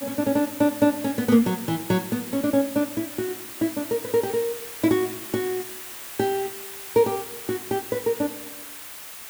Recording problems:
hiss; slope 0 dB per octave, SNR 10 dB

